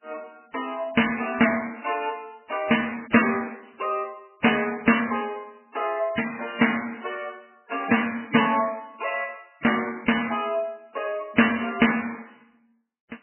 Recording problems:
lossy codec; MP3, log-spectral distance 7 dB, nothing above 2.9 kHz

